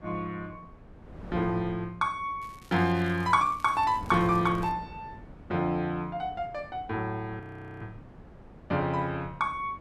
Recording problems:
wind on the microphone; below 410 Hz, SNR 18 dB
crackle; from 2.5 to 4.5 s; loose cable, SNR 25 dB
audio freezing; at 7.5 s

